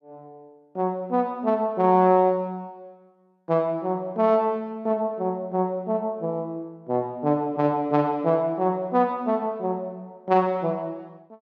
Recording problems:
none

